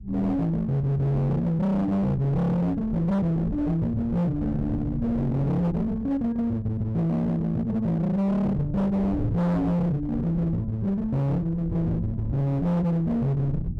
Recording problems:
distortion; hard clipping, uneven, signal-to-distortion ratio 6 dB
rumble; below 160 Hz, SNR 12 dB

